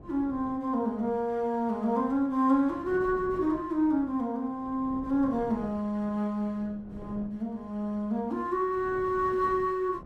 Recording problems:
wind noise; below 370 Hz, SNR 19 dB

